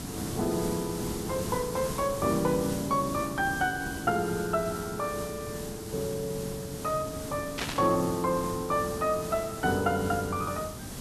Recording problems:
hiss; SNR 7 dB
static burst; at 7.5 s; peak +2 dB vs average level

